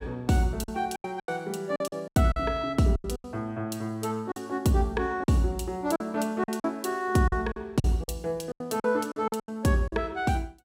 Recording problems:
packet loss; 12% of the sound replaced, filled with silence

